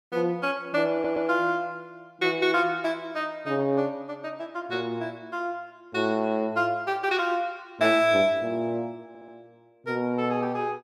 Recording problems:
audio stuttering; at 1 s and at 9 s

